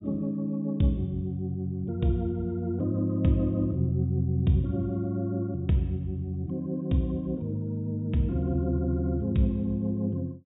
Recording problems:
treble missing; nothing above 4 kHz

